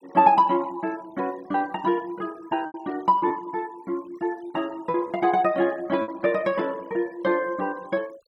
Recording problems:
denoising artefacts; signal-to-artefact ratio 25 dB
packet loss; 4% of the sound replaced, filled with repeated pitch periods

